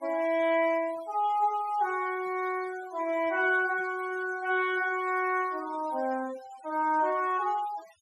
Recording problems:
denoising artefacts; signal-to-artefact ratio 20 dB

